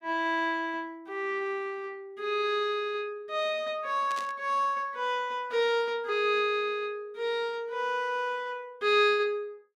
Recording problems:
static burst; at 4 s; peak -7 dB vs average level

